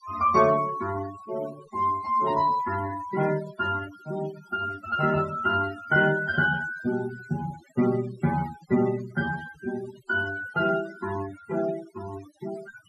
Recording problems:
denoising artefacts; signal-to-artefact ratio 15 dB

